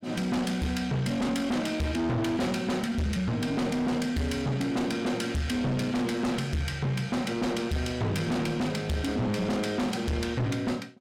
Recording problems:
distorted audio; soft clipping, signal-to-distortion ratio 6 dB

